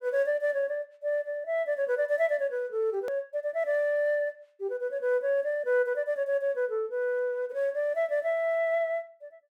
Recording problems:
hard cut with a click; at 3 s

